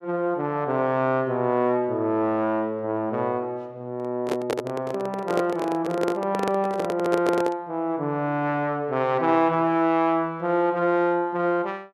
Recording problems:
handling noise; from 4 to 7.5 s; peak +1 dB vs average level

